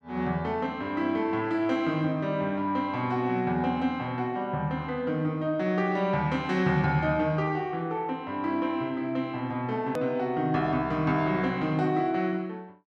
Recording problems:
click at an edit; at 10 s

